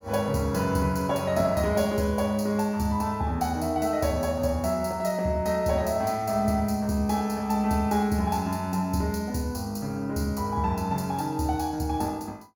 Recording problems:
none

